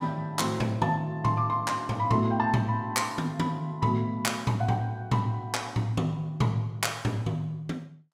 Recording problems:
none

